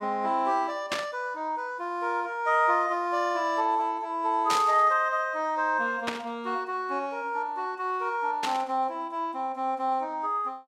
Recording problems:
static burst; 4 times, first at 1 s; peak +2 dB vs average level

